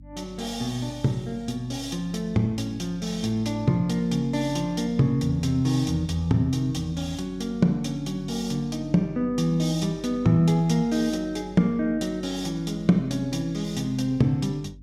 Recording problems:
hum; 50 Hz, harmonics up to 300 Hz, SNR 21 dB

